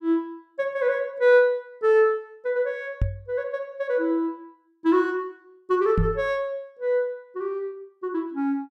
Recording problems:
knock on the microphone; at 3 s and at 6 s; peak +4 dB vs average level

